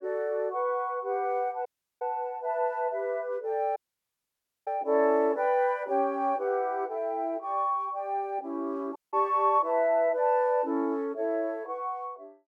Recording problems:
dropout; at 1.5 s, at 4 s for 1 s and at 9 s

